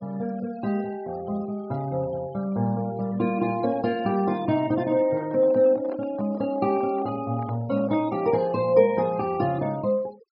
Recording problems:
treble cut off; nothing above 5.3 kHz
noise reduction artefacts; signal-to-artefact ratio 23 dB
microphone handling noise; from 5 to 8 s; peak -11 dB vs average level

